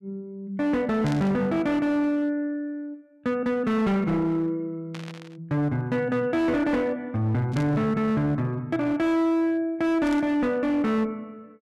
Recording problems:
distorted audio; hard clipping, uneven, signal-to-distortion ratio 11 dB
static burst; 4 times, first at 1 s; peak -10 dB vs average level

